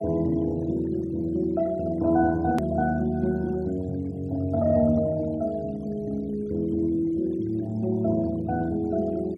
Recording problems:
denoising artefacts; signal-to-artefact ratio 25 dB
edit click; at 2.5 s

